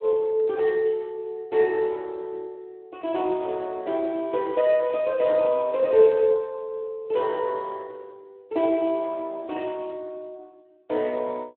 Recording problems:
phone line; 260 Hz to 3.5 kHz, Speex

